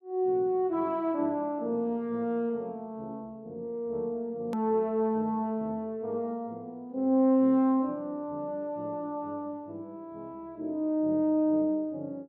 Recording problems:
edit click; at 4.5 s

